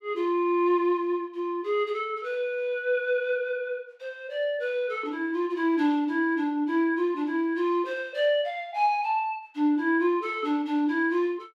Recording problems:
none

